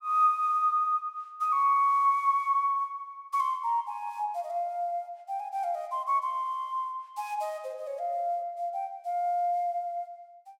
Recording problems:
none

